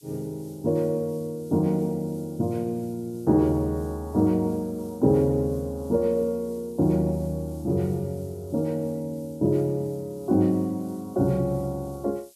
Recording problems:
hiss; SNR 27 dB

